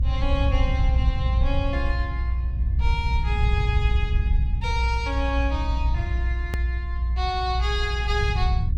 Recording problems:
low-frequency rumble; below 76 Hz, strongest tone 60 Hz, SNR -5 dB
click at an edit; at 6.5 s

